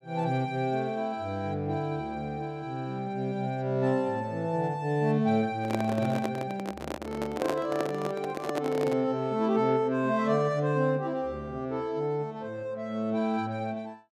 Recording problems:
handling noise; from 5.5 to 9 s; peak +2 dB vs average level

